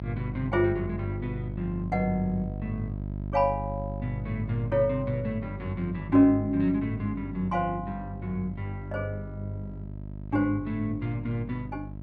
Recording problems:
electrical hum; 50 Hz, harmonics up to 700 Hz, SNR 8 dB

